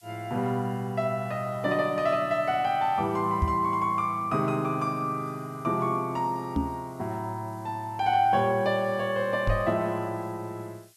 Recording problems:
background hiss; slope +5 dB per octave, SNR 29 dB
knock on the microphone; at 3.5 s, at 6.5 s and at 9.5 s; peak +4 dB vs average level

